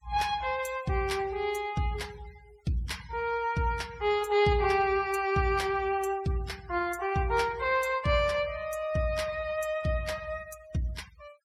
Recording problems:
noise reduction artefacts; signal-to-artefact ratio 21 dB

